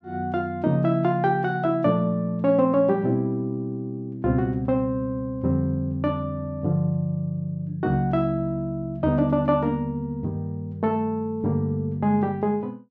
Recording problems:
none

